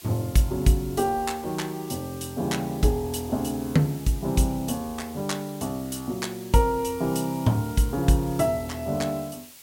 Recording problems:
background hiss; slope +1 dB per octave, SNR 18 dB

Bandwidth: 16.5 kHz